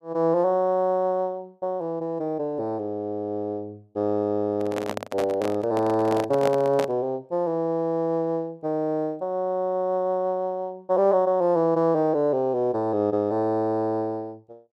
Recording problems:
microphone handling noise; from 4.5 to 7 s; peak 0 dB vs average level

